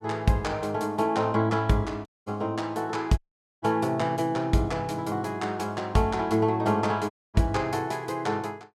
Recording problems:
dropout; at 2 s, at 3 s and at 7 s

